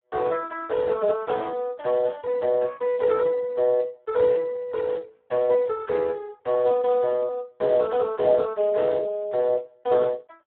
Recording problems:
telephone audio; 340 Hz to 2 kHz, Speex

